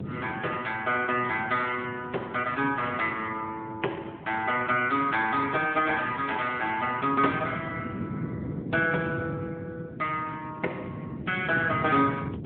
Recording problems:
phone line; 280 Hz to 3.5 kHz, AMR-NB
wind on the microphone; below 310 Hz, SNR 11 dB

